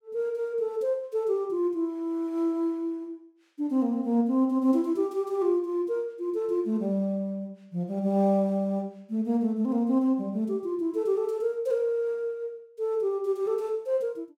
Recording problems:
none

